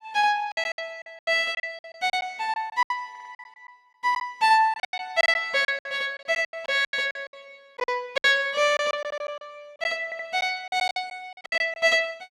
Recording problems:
lost packets; 15% of the sound replaced, filled with silence
audio stuttering; at 3 s, at 9 s and at 10 s

